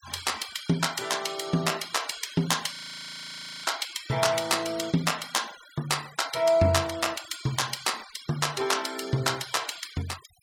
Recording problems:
denoising artefacts; signal-to-artefact ratio 16 dB
frozen audio; at 3 s for 1 s

